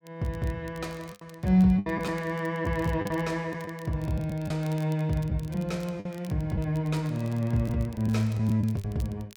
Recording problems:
crackle; vinyl, SNR 25 dB
lost packets; 5% of the sound replaced, filled with the last packet

